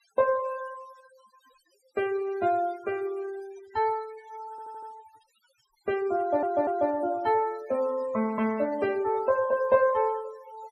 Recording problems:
noise reduction artefacts; signal-to-artefact ratio 20 dB
stutter; at 4.5 s and at 6 s

